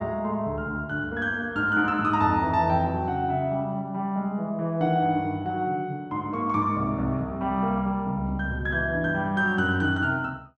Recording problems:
none

